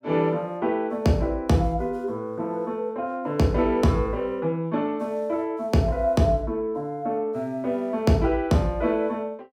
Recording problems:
none

